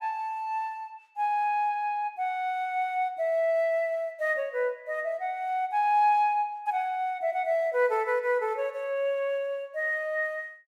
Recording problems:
none

